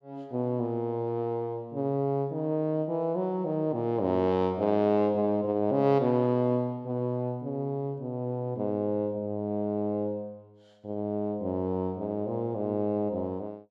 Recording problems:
none

